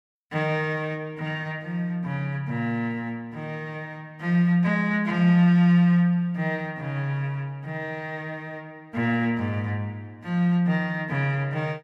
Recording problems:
none

